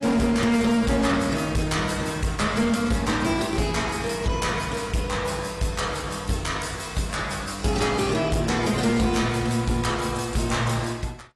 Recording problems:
lossy compression; AAC, log-spectral distance 6 dB, nothing above 11.6 kHz
distortion; hard clipping, signal-to-distortion ratio 11 dB

